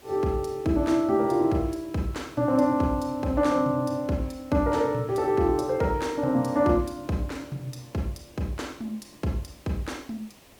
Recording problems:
hiss; SNR 26 dB

